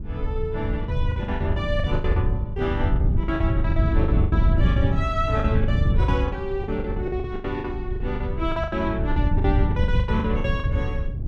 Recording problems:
wind on the microphone; below 110 Hz, SNR -3 dB
packet loss; 16% of the sound replaced, filled with the last packet

